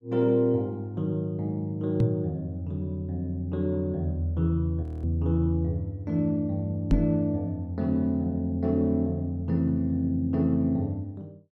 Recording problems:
microphone thump; at 2 s and at 7 s; peak +8 dB vs average level
audio freezing; at 5 s

